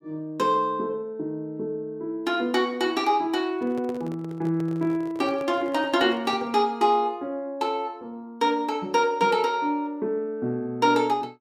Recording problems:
handling noise; from 3.5 to 6.5 s; peak -9 dB vs average level

